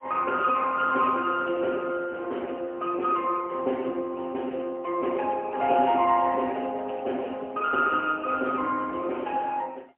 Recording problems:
telephone audio; 280 Hz to 3.1 kHz, AMR-NB, then MP3

